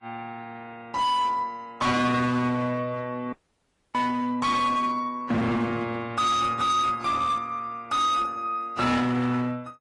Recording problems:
lossy codec; AAC, then AAC, log-spectral distance 2 dB, nothing above 10.1 kHz
distorted audio; hard clipping, signal-to-distortion ratio 7 dB
audio cutting out; at 3.5 s for 0.5 s

